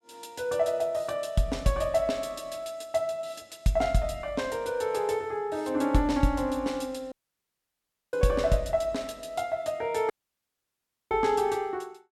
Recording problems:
dropout; at 7 s for 1 s and at 10 s for 1 s

